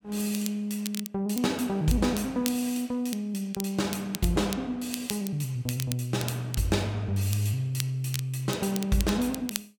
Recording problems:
crackling; vinyl, SNR 10 dB

